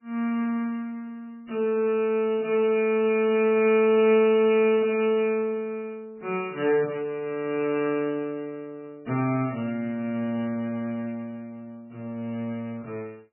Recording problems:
codec artefacts; MP3, log-spectral distance 2 dB, nothing above 2.4 kHz

